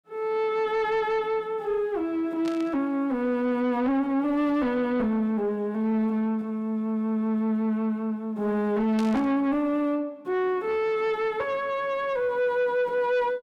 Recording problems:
distortion; soft clipping, signal-to-distortion ratio 10 dB
burst of static; at 2.5 s and at 9 s; peak -8 dB vs average level

